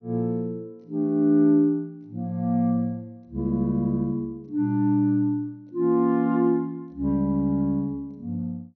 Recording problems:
treble missing; nothing above 6.3 kHz

